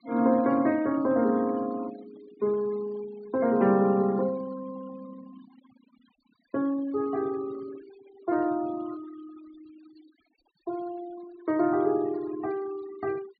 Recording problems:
low-pass filter; nothing above 4.6 kHz
denoising artefacts; signal-to-artefact ratio 23 dB

